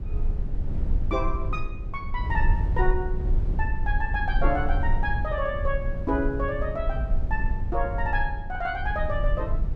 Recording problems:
rumble; below 62 Hz, SNR -1 dB

